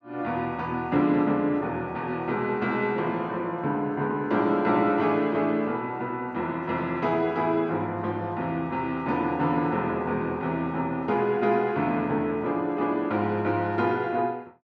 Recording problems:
none

